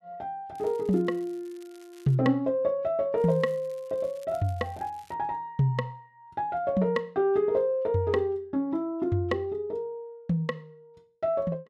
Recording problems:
crackling; from 0.5 to 2 s and from 3 to 5 s; loose cable, SNR 30 dB

